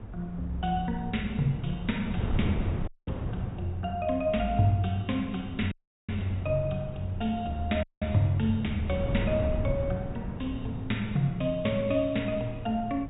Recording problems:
treble cut off; nothing above 4 kHz
wind on the microphone; below 200 Hz, SNR 7 dB
dropout; at 3 s, at 5.5 s and at 8 s

